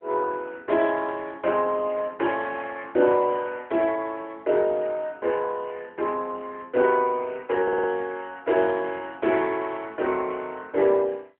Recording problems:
phone line; 300 Hz to 3.4 kHz, AMR-NB
stutter; at 7.5 s

